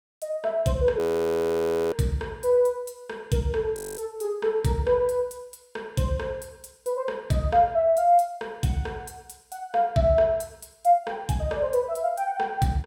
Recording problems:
audio freezing; at 1 s for 1 s and at 4 s

